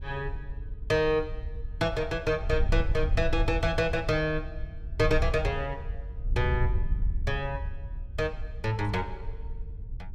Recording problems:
wind on the microphone; below 72 Hz, SNR 5 dB

